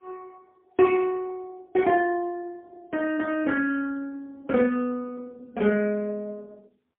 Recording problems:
phone line; 280 Hz to 3.1 kHz, AMR-NB, then MP3

